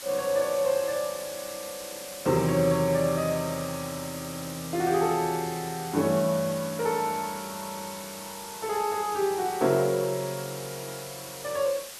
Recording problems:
hiss; slope +1 dB per octave, SNR 11 dB

